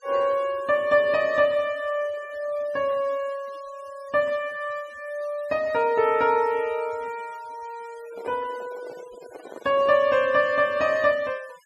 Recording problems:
denoising artefacts; signal-to-artefact ratio 25 dB
microphone handling noise; from 8 to 10 s; peak -10 dB vs average level

